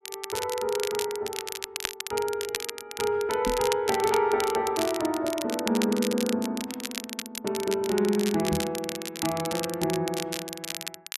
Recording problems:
crackling; vinyl, SNR 7 dB
microphone thump; at 3.5 s and at 8.5 s; peak 0 dB vs average level

